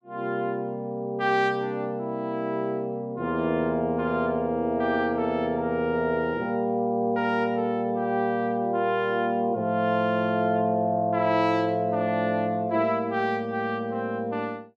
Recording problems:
none

